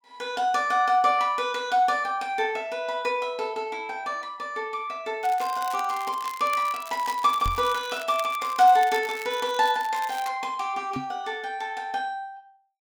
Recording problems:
crackling; from 5 to 10 s; loose cable, SNR 17 dB
microphone thump; at 7.5 s and at 11 s; peak -3 dB vs average level

